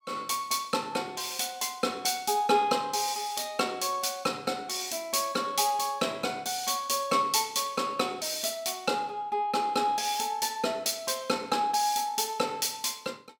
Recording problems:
none

